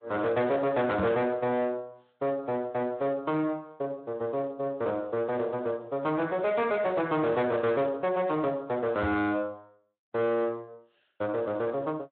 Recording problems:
treble missing; nothing above 3.8 kHz
lossy compression; MP3, then Speex, log-spectral distance 2 dB
distorted audio; soft clipping, signal-to-distortion ratio 11 dB
microphone bump; at 1 s and at 9 s; peak +2 dB vs average level

